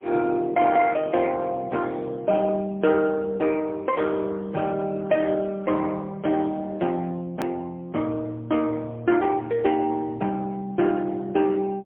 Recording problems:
telephone audio; 170 Hz to 2.8 kHz, AMR-NB, then MP3
hard cut with a click; at 7.5 s

